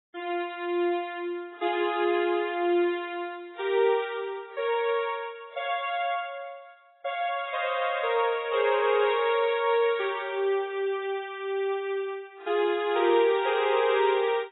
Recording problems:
codec artefacts; AAC, log-spectral distance 3 dB, nothing above 3.4 kHz

